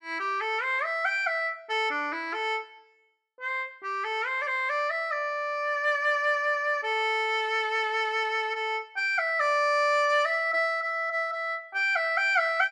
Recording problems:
none

